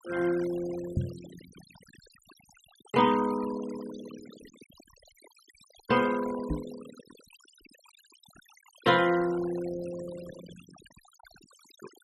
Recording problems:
noise reduction artefacts; signal-to-artefact ratio 18 dB
microphone thump; at 1 s and at 6.5 s; peak +3 dB vs average level

